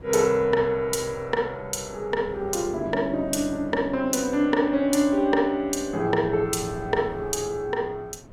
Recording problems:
wind on the microphone; below 410 Hz, SNR 20 dB

